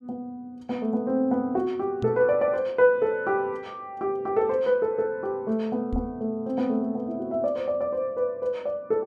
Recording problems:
microphone bump; at 2 s and at 6 s; peak -1 dB vs average level

